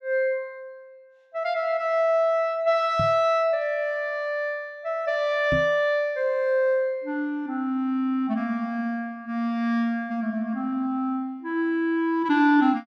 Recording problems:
knock on the microphone; at 3 s and at 5.5 s; peak 0 dB vs average level

